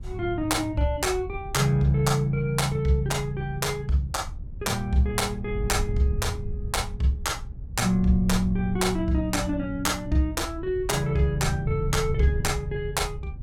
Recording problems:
wind on the microphone; below 98 Hz, SNR 9 dB

